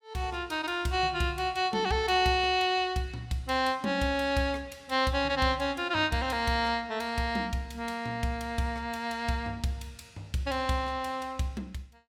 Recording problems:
none

